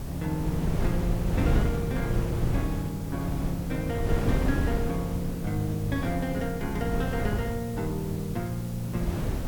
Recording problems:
background hiss; SNR 16 dB
wind noise; below 210 Hz, SNR 0 dB

